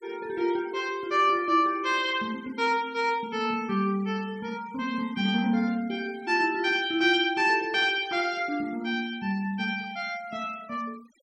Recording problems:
denoising artefacts; signal-to-artefact ratio 24 dB

